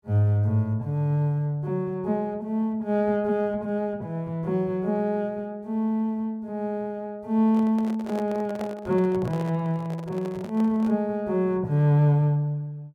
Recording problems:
microphone handling noise; from 7.5 to 11 s; peak -7 dB vs average level

